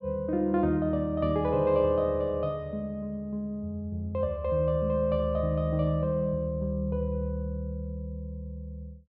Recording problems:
low-pass filter; nothing above 5.6 kHz

